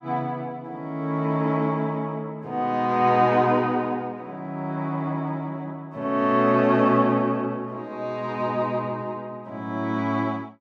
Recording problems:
none

